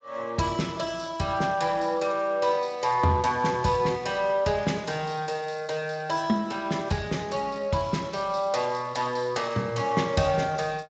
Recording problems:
codec artefacts; Speex, log-spectral distance 5 dB, nothing above 7.6 kHz

